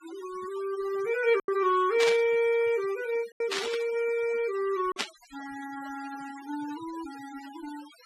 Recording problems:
noise reduction artefacts; signal-to-artefact ratio 17 dB
packet loss; 2% of the sound replaced, filled with silence
static burst; at 2 s, at 3.5 s and at 5 s; peak +3 dB vs average level

